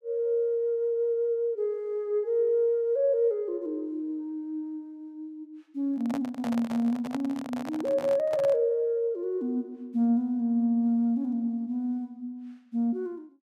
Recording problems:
handling noise; from 6 to 8.5 s; peak -5 dB vs average level

